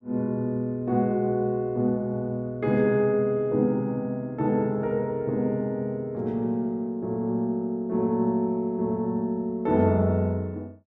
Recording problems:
none

